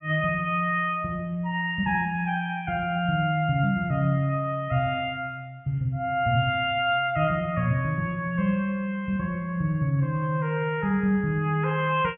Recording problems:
treble missing; nothing above 3.3 kHz

